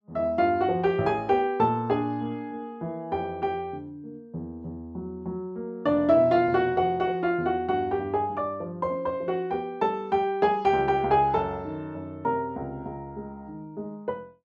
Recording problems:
none

